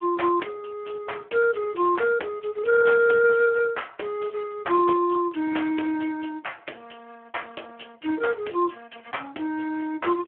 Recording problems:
telephone audio; 260 Hz to 3.3 kHz, Speex

